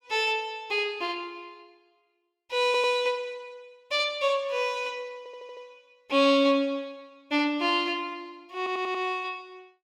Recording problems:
audio stuttering; at 2.5 s, at 5 s and at 8.5 s

